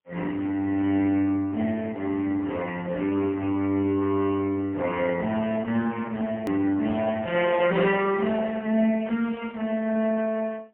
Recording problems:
telephone audio; 170 Hz to 3.7 kHz, AMR-NB, then MP3
hard cut with a click; at 6.5 s

